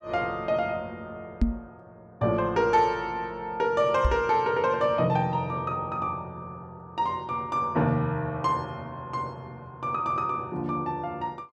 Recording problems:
microphone thump; at 1.5 s and at 4 s; peak +7 dB vs average level

